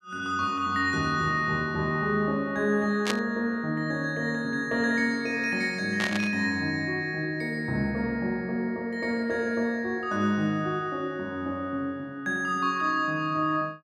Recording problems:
static burst; at 3 s and at 6 s; peak +3 dB vs average level

